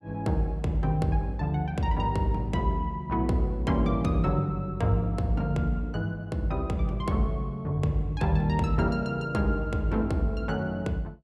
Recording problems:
none

